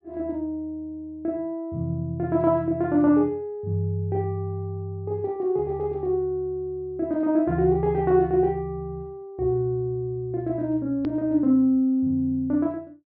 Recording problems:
treble missing; nothing above 5.5 kHz
hard cut with a click; at 11 s

